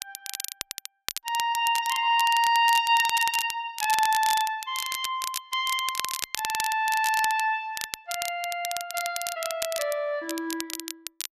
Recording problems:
crackle; vinyl, SNR 8 dB

